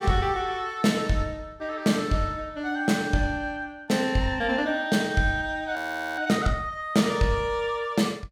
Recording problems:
frozen audio; at 6 s

